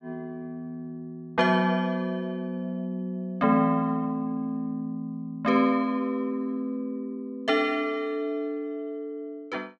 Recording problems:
none

